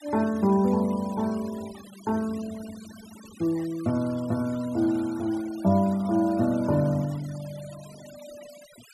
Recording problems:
denoising artefacts; signal-to-artefact ratio 22 dB

